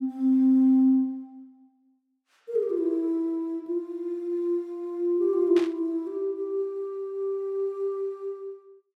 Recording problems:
burst of static; at 5.5 s; peak -8 dB vs average level

